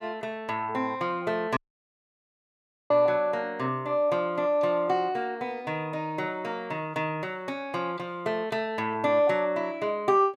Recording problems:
audio cutting out; at 1.5 s for 1.5 s

